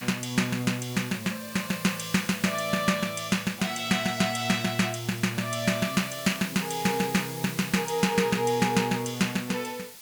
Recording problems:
background hiss; slope +1 dB per octave, SNR 13 dB

